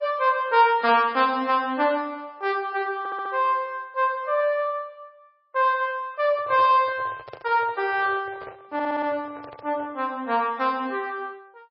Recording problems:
lossy codec; MP3, log-spectral distance 2 dB, nothing above 5.2 kHz
audio stuttering; at 3 s and at 8.5 s
handling noise; from 6.5 to 10 s; peak -11 dB vs average level

